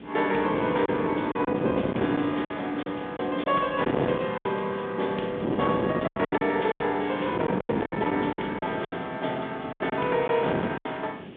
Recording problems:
telephone audio; 220 Hz to 3.6 kHz, G.726
distorted audio; soft clipping, signal-to-distortion ratio 15 dB
hiss; SNR 27 dB
wind on the microphone; below 520 Hz, SNR 5 dB
lost packets; 9% of the sound replaced, filled with silence

